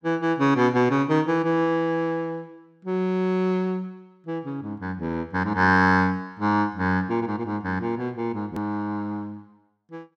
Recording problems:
click at an edit; at 8.5 s

